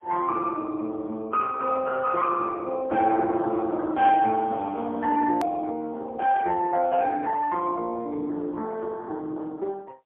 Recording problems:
telephone audio; 240 Hz to 2.3 kHz, AMR-NB, then MP3
hard cut with a click; at 5.5 s

